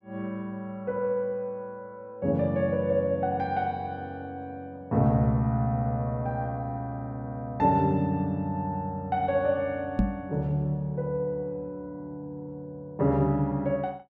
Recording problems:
knock on the microphone; at 10 s; peak +8 dB vs average level

